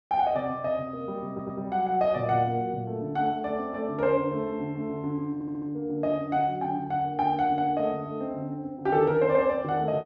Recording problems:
audio stuttering; at 1.5 s and at 5.5 s

